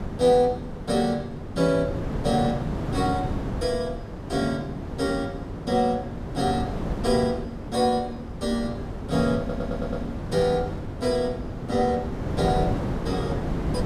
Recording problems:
wind on the microphone; below 380 Hz, SNR 6 dB
audio stuttering; at 9.5 s

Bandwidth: 14.5 kHz